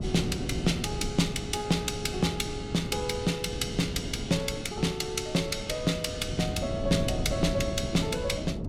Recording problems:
wind on the microphone; below 270 Hz, SNR 6 dB

